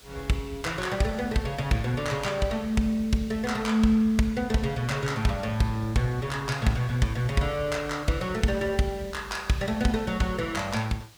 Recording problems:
hiss; slope 0 dB per octave, SNR 23 dB

